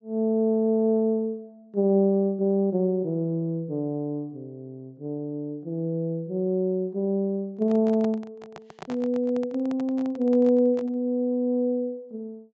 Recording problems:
low-pass filter; nothing above 8 kHz
handling noise; from 7.5 to 11 s; peak -10 dB vs average level

